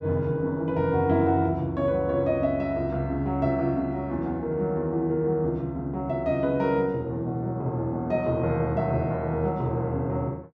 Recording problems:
none

